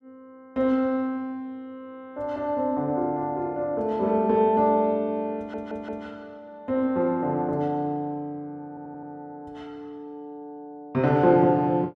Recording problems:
audio stuttering; at 5.5 s and at 8.5 s

